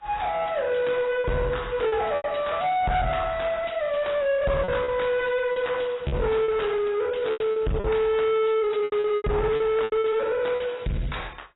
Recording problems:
lossy codec; AAC, log-spectral distance 4 dB, nothing above 3.8 kHz
distorted audio; soft clipping, signal-to-distortion ratio 7 dB
packet loss; 8% of the sound replaced, filled with repeated pitch periods

